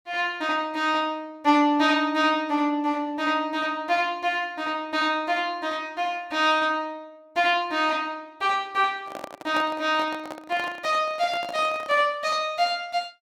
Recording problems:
handling noise; from 9 to 12 s; peak -5 dB vs average level

